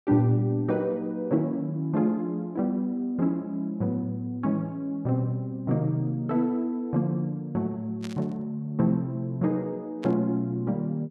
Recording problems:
burst of static; at 8 s and at 10 s; peak -10 dB vs average level

